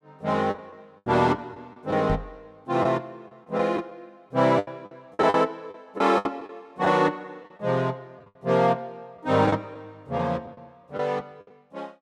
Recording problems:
lost packets; 8% of the sound replaced, filled with the last packet
microphone thump; at 2 s; peak 0 dB vs average level

